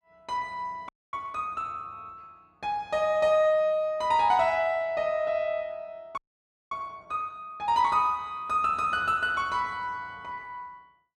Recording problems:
audio freezing; at 1 s and at 6 s for 0.5 s

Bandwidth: 13 kHz